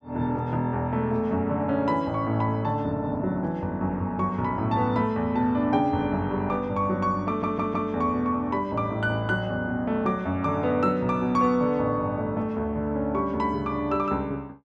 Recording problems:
stutter; at 7.5 s

